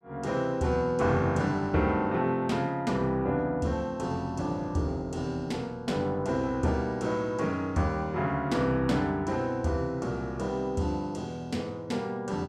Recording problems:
none

